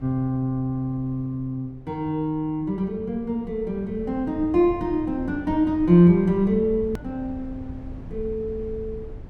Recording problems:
rumble; below 140 Hz, SNR 17 dB
click at an edit; at 7 s

